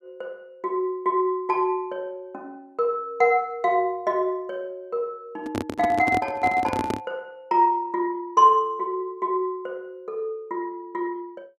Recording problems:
microphone handling noise; from 5.5 to 7 s; peak 0 dB vs average level

